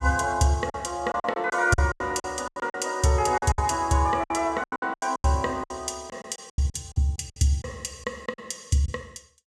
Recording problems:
lost packets; 15% of the sound replaced, filled with silence

